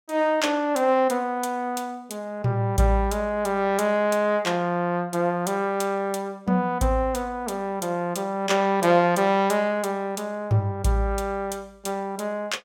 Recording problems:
none

